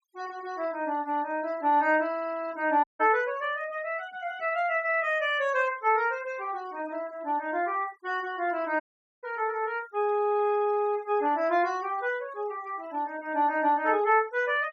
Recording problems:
denoising artefacts; signal-to-artefact ratio 25 dB
audio cutting out; at 3 s and at 9 s

